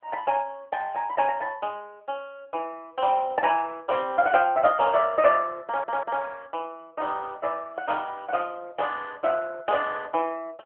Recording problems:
phone line; 320 Hz to 3.3 kHz, AMR-NB
stutter; at 5.5 s

